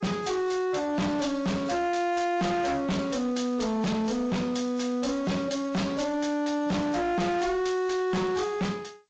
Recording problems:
codec artefacts; MP3, then G.722, log-spectral distance 3 dB
distorted audio; hard clipping, signal-to-distortion ratio 6 dB

